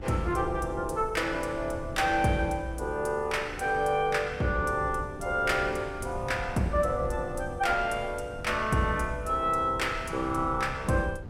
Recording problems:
wind noise; below 160 Hz, SNR 14 dB

